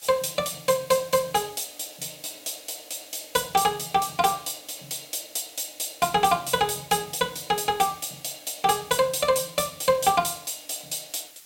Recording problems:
hiss; slope +2 dB per octave, SNR 21 dB

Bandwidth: 16.5 kHz